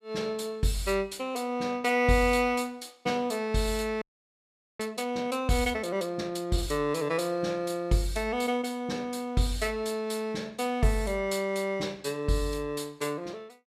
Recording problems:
audio freezing; at 4 s for 1 s

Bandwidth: 14.5 kHz